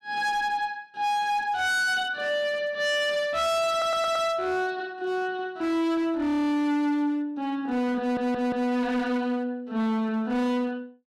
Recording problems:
distorted audio; hard clipping, signal-to-distortion ratio 7 dB
audio stuttering; at 3.5 s and at 8 s

